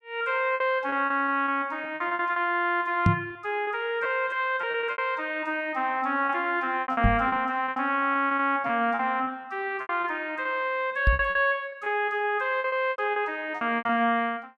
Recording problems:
packet loss; 13% of the sound replaced, filled with repeated pitch periods
microphone thump; at 3 s, at 7 s and at 11 s; peak +8 dB vs average level

